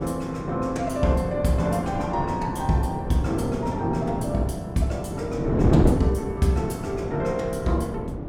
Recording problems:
wind noise; below 370 Hz, SNR 3 dB

